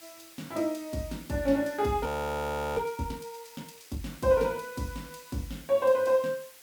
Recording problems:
background hiss; slope +1 dB per octave, SNR 21 dB
frozen audio; at 2 s for 0.5 s

